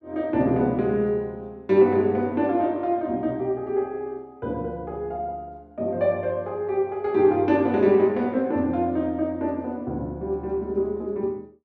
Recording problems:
none

